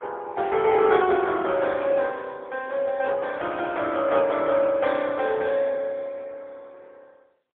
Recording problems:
phone line; 340 Hz to 3.4 kHz, AMR-NB, then MP3

